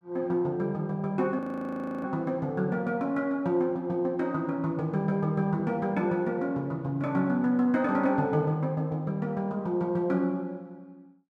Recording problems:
frozen audio; at 1.5 s for 0.5 s

